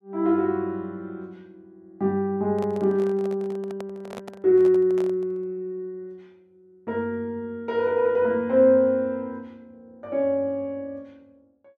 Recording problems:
microphone handling noise; from 2.5 to 5.5 s; peak -10 dB vs average level

